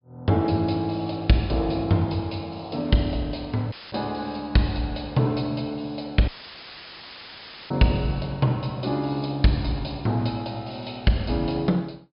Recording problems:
treble cut off; nothing above 5.5 kHz
audio cutting out; at 3.5 s and at 6.5 s for 1.5 s; filled with static

